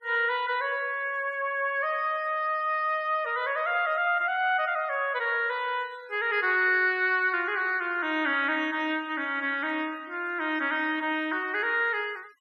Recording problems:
noise reduction artefacts; signal-to-artefact ratio 27 dB

